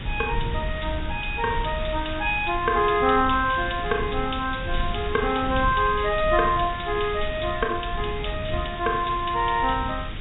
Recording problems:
treble missing; nothing above 4 kHz
background hiss; SNR 13 dB
low-frequency rumble; below 110 Hz, SNR 9 dB

